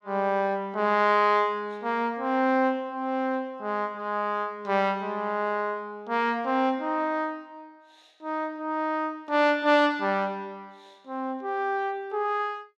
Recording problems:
none

